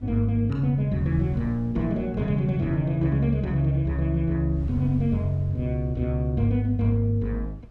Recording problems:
wind on the microphone; below 92 Hz, SNR 21 dB

